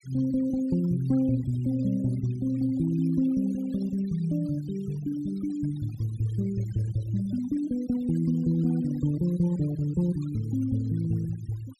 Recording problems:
denoising artefacts; signal-to-artefact ratio 22 dB

